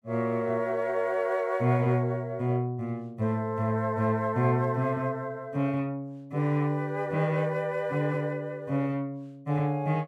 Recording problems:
none

